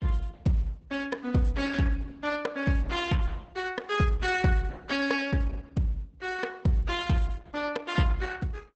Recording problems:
lossy compression; Opus, log-spectral distance 3 dB, nothing above 8 kHz

